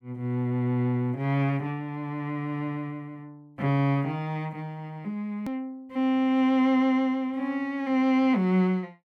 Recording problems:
edit click; at 5.5 s

